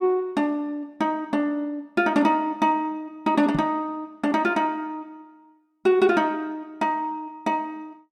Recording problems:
microphone bump; at 3.5 s; peak 0 dB vs average level

